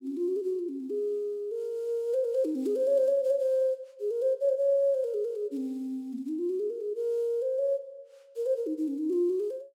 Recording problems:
none

